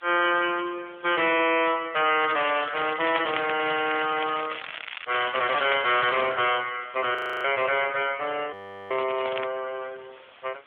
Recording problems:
phone line; 300 Hz to 3.4 kHz, AMR-NB
distorted audio; soft clipping, signal-to-distortion ratio 10 dB
background hiss; SNR 27 dB
crackling; from 2 to 6 s and at 9 s; loose cable, SNR 10 dB
frozen audio; at 7 s and at 8.5 s

